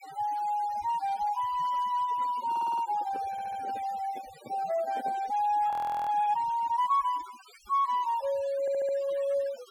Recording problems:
noise reduction artefacts; signal-to-artefact ratio 19 dB
microphone handling noise; from 2 to 5.5 s; peak -11 dB vs average level
stutter; at 2.5 s, at 3.5 s and at 8.5 s
frozen audio; at 5.5 s

